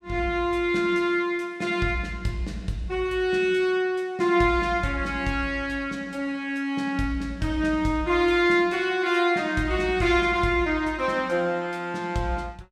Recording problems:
none

